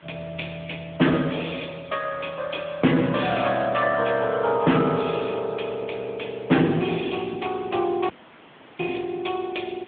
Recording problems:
telephone audio; 130 Hz to 3.5 kHz, AMR-NB
distortion; hard clipping, signal-to-distortion ratio 10 dB
background hiss; SNR 28 dB
audio cutting out; at 8 s for 0.5 s

